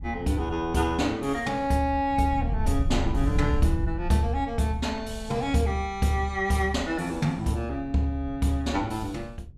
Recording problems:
wind on the microphone; below 92 Hz, SNR 7 dB

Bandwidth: 14.5 kHz